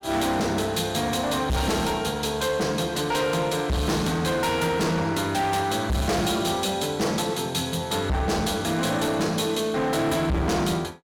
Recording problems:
distortion; hard clipping, signal-to-distortion ratio 6 dB

